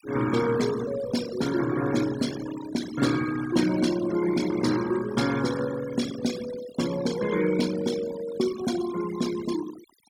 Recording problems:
denoising artefacts; signal-to-artefact ratio 11 dB

